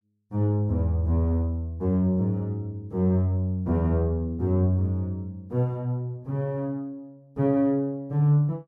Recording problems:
none

